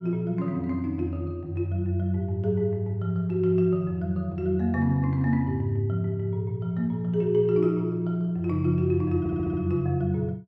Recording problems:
stutter; at 9 s

